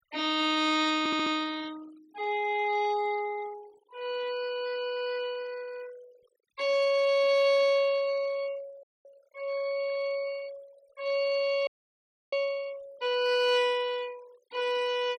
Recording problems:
noise reduction artefacts; signal-to-artefact ratio 23 dB
audio stuttering; at 1 s
audio freezing; at 9 s and at 12 s for 0.5 s

